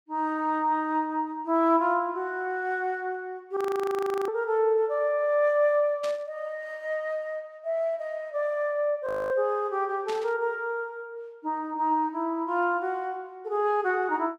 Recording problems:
audio freezing; at 3.5 s for 0.5 s and at 9 s
burst of static; at 6 s and at 10 s; peak -7 dB vs average level

